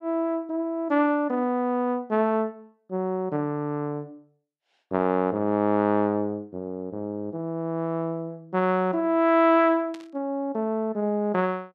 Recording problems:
burst of static; at 10 s; peak -15 dB vs average level

